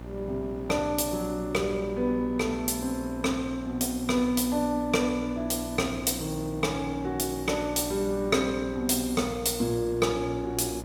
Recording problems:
hum; 60 Hz, harmonics up to 1.2 kHz, SNR 13 dB
hiss; slope -7 dB per octave, SNR 26 dB

